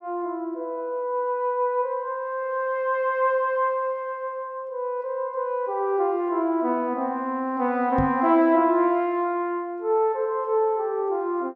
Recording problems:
knock on the microphone; at 8 s; peak +2 dB vs average level

